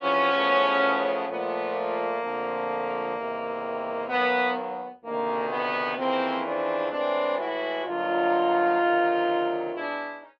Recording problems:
none

